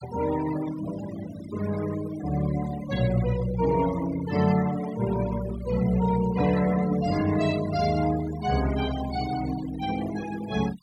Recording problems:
noise reduction artefacts; signal-to-artefact ratio 15 dB

